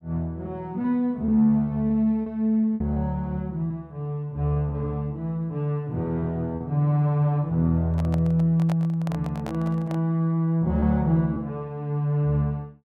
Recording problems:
lost packets; 3% of the sound replaced, filled with repeated pitch periods
microphone handling noise; from 8 to 10 s; peak -8 dB vs average level

